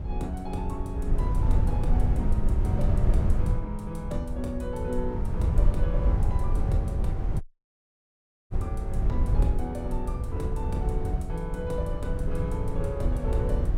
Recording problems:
wind noise; below 88 Hz, SNR -6 dB
audio cutting out; at 7.5 s for 1 s

